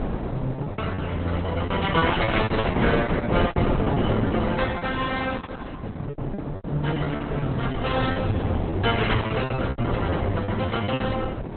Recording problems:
codec artefacts; Opus, log-spectral distance 4 dB, nothing above 4 kHz
wind on the microphone; below 510 Hz, SNR 1 dB
packet loss; 15% of the sound replaced, filled with repeated pitch periods

